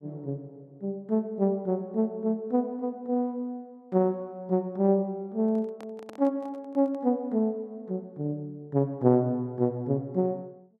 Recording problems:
handling noise; from 5.5 to 7 s; peak -12 dB vs average level

